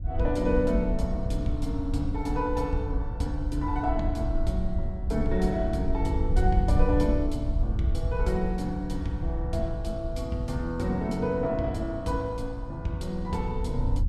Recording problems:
wind noise; below 76 Hz, SNR 3 dB

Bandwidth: 14.5 kHz